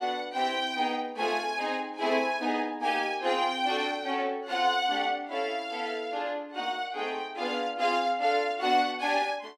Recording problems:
none

